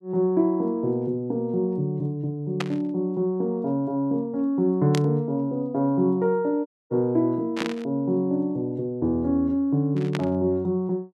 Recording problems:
burst of static; 4 times, first at 2.5 s; peak -1 dB vs average level
dropout; at 6.5 s

